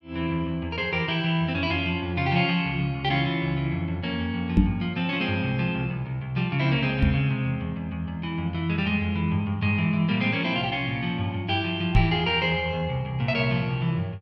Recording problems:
knock on the microphone; at 4.5 s, at 7 s and at 12 s; peak +8 dB vs average level

